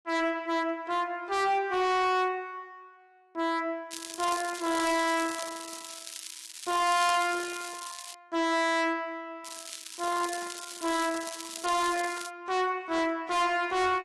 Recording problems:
lossy codec; AAC, log-spectral distance 7 dB, nothing above 11.3 kHz
distortion; hard clipping, uneven, signal-to-distortion ratio 6 dB
crackling; from 4 to 8 s and from 9.5 to 12 s; loose cable, SNR 11 dB

